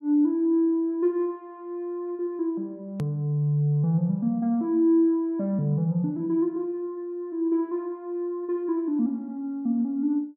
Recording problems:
hard cut with a click; at 3 s

